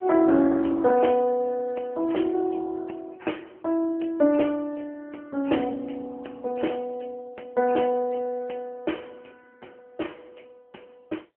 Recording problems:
telephone audio; 240 Hz to 3.2 kHz, AMR-NB

